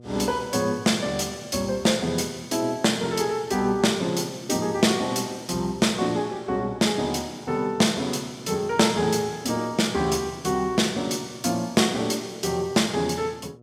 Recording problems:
electrical hum; 60 Hz, harmonics up to 720 Hz, SNR 24 dB

